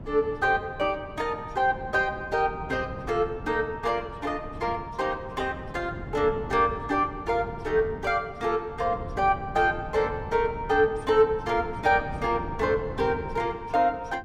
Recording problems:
wind on the microphone; below 260 Hz, SNR 13 dB

